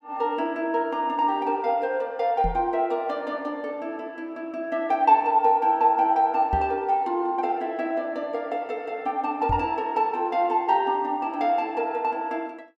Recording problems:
microphone thump; at 2.5 s, at 6.5 s and at 9.5 s; peak -1 dB vs average level

